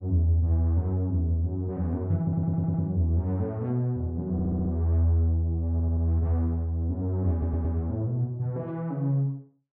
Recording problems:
audio stuttering; 4 times, first at 2 s

